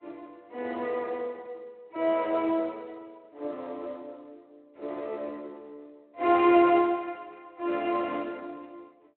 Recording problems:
telephone audio; 280 Hz to 3.1 kHz, Speex

